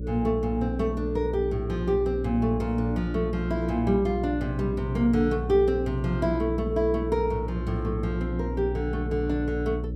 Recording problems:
hum; 60 Hz, harmonics up to 540 Hz, SNR 5 dB

